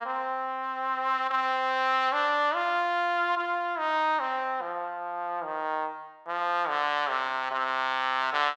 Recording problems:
none

